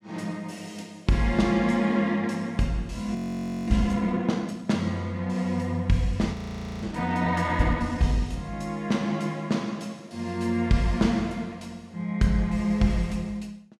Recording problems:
audio freezing; at 3 s for 0.5 s and at 6.5 s for 0.5 s

